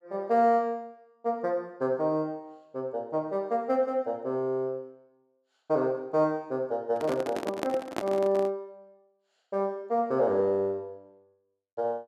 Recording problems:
handling noise; from 7 to 8.5 s; peak +1 dB vs average level

